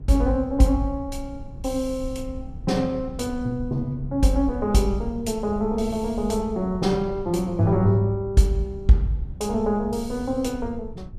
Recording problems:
low-frequency rumble; below 100 Hz, SNR 14 dB

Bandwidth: 14.5 kHz